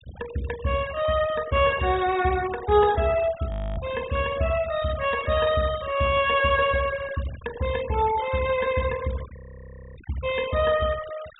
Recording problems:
low-pass filter; nothing above 4 kHz
noise reduction artefacts; signal-to-artefact ratio 16 dB
audio freezing; at 3.5 s and at 9.5 s for 0.5 s

